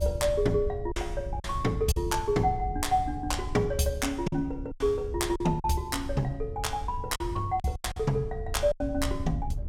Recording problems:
wind noise; below 92 Hz, SNR 8 dB
packet loss; 6% of the sound replaced, filled with silence

